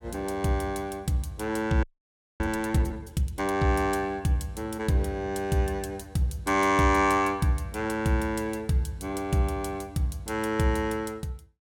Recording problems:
audio freezing; at 2 s for 0.5 s

